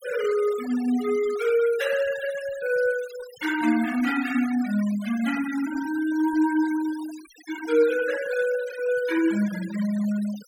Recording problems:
noise reduction artefacts; signal-to-artefact ratio 15 dB

